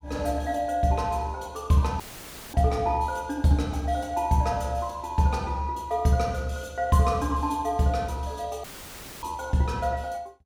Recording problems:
dropout; at 2 s for 0.5 s and at 8.5 s for 0.5 s; filled with static

